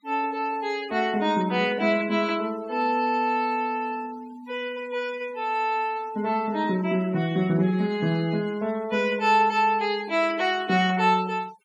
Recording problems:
denoising artefacts; signal-to-artefact ratio 21 dB

